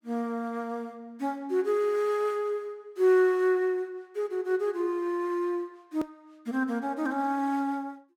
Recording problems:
hard cut with a click; at 6 s

